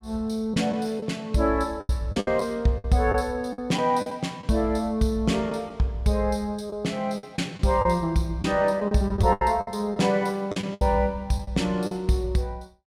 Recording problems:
lost packets; 9% of the sound replaced, filled with the last packet

